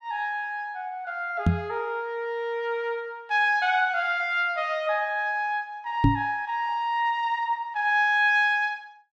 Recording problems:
microphone thump; at 1.5 s and at 6 s; peak +8 dB vs average level

